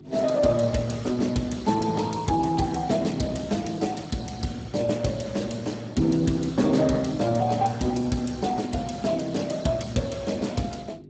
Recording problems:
codec artefacts; Speex, log-spectral distance 5 dB, nothing above 8 kHz
electrical hum; 50 Hz, harmonics up to 500 Hz, SNR 22 dB

